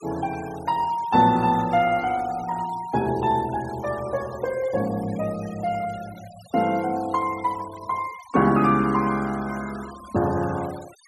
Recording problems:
denoising artefacts; signal-to-artefact ratio 20 dB

